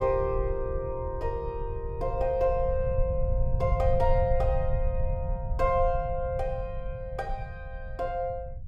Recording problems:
rumble; below 86 Hz, SNR 3 dB

